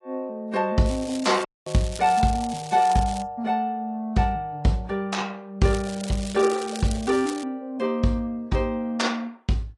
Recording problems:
lossy codec; AAC, log-spectral distance 3 dB, nothing above 10.1 kHz
crackling; from 1 to 3 s and from 5.5 to 7.5 s; loose cable, SNR 14 dB
dropout; at 1.5 s

